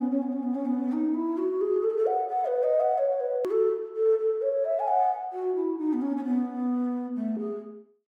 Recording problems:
hard cut with a click; at 3.5 s

